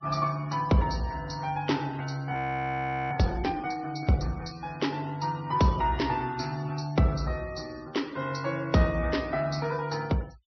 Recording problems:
low-pass filter; nothing above 5.9 kHz
denoising artefacts; signal-to-artefact ratio 21 dB
audio freezing; at 2.5 s for 1 s

